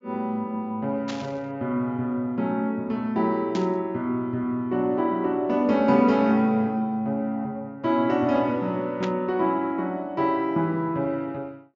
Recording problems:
treble missing; nothing above 7.4 kHz
static burst; at 1 s, at 3.5 s and at 9 s; peak -5 dB vs average level

